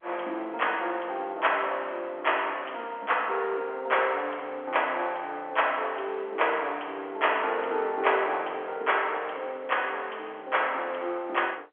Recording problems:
phone line; 280 Hz to 3.4 kHz, G.711

